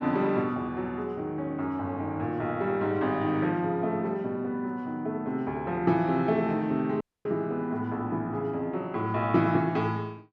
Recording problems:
dropout; at 7 s

